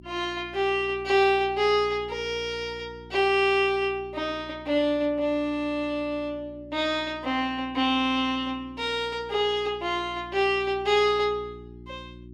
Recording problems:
hum; 60 Hz, harmonics up to 360 Hz, SNR 21 dB

